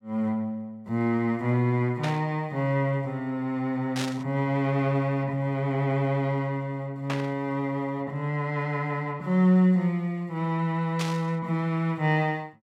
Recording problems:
burst of static; 4 times, first at 2 s; peak -2 dB vs average level

